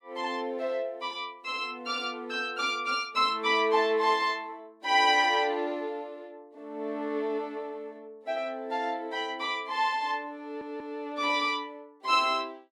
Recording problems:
stutter; at 10 s

